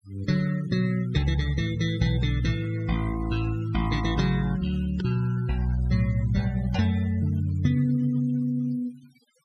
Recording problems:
denoising artefacts; signal-to-artefact ratio 20 dB

